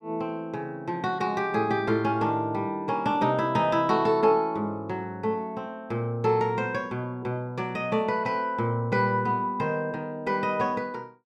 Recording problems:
none

